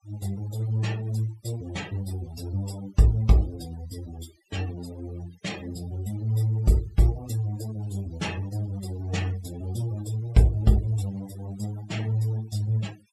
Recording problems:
denoising artefacts; signal-to-artefact ratio 20 dB

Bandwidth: 14.5 kHz